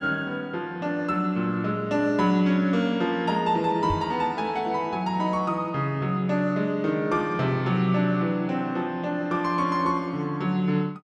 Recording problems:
microphone thump; at 4 s; peak -2 dB vs average level

